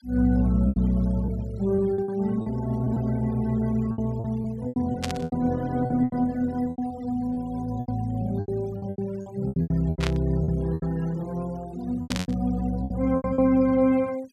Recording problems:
noise reduction artefacts; signal-to-artefact ratio 23 dB
packet loss; 13% of the sound replaced, filled with repeated pitch periods
burst of static; at 5 s, at 10 s and at 12 s; peak 0 dB vs average level

